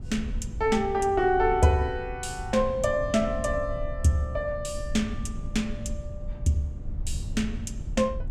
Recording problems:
low-frequency rumble; below 94 Hz, SNR 10 dB

